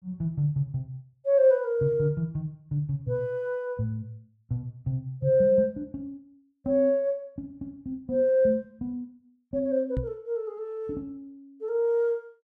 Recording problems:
knock on the microphone; at 10 s; peak 0 dB vs average level

